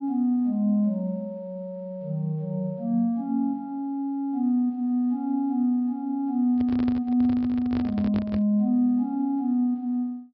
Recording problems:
treble missing; nothing above 5.5 kHz
handling noise; from 6.5 to 8.5 s; peak -4 dB vs average level

